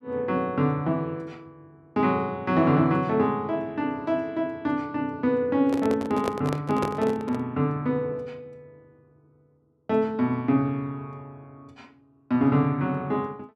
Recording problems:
microphone handling noise; from 5.5 to 7.5 s; peak +1 dB vs average level

